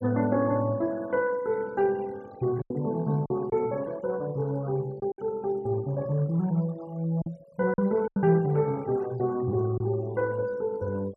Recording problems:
denoising artefacts; signal-to-artefact ratio 23 dB
packet loss; 4% of the sound replaced, filled with silence

